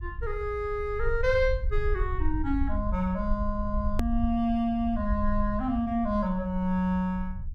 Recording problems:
rumble; below 62 Hz, SNR 6 dB
hard cut with a click; at 4 s

